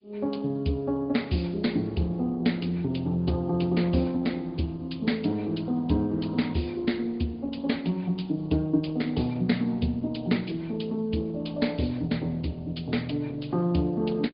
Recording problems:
treble cut off; nothing above 4.9 kHz
lossy codec; MP3, then Opus, log-spectral distance 3 dB

